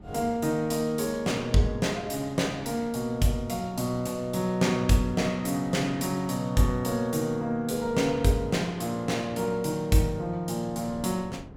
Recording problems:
wind on the microphone; below 410 Hz, SNR 22 dB

